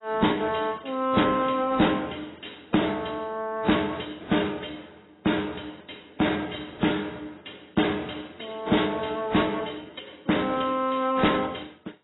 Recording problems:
lossy compression; AAC, then AAC, log-spectral distance 9 dB, nothing above 3.9 kHz
distorted audio; soft clipping, signal-to-distortion ratio 10 dB

